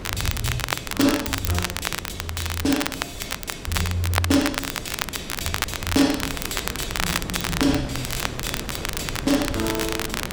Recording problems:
wind on the microphone; below 540 Hz, SNR 9 dB
crackle; vinyl, SNR 2 dB

